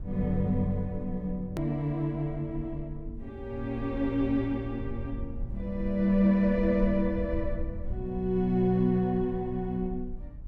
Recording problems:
low-frequency rumble; below 72 Hz, SNR 12 dB
edit click; at 1.5 s

